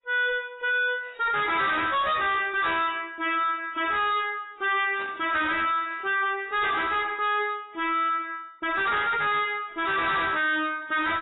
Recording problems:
lossy compression; AAC, log-spectral distance 5 dB, nothing above 3.8 kHz
distorted audio; soft clipping, signal-to-distortion ratio 5 dB
burst of static; at 5 s; peak -12 dB vs average level

